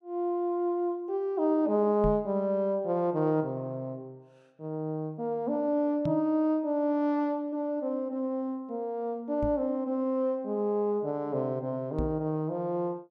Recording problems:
microphone thump; 4 times, first at 2 s; peak 0 dB vs average level

